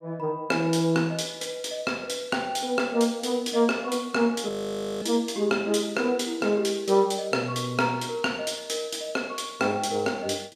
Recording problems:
frozen audio; at 4.5 s for 0.5 s

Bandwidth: 14.5 kHz